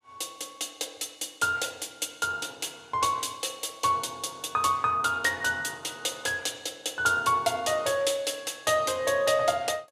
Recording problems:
none

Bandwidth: 14.5 kHz